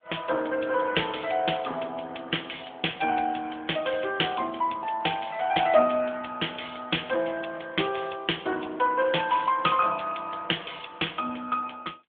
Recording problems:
phone line; 260 Hz to 3.5 kHz, AMR-NB

